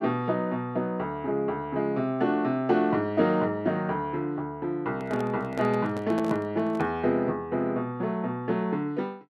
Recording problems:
handling noise; from 5 to 7 s; peak -3 dB vs average level

